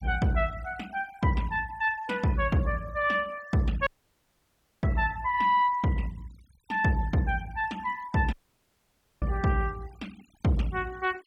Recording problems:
noise reduction artefacts; signal-to-artefact ratio 23 dB
audio cutting out; at 4 s for 1 s and at 8.5 s for 1 s

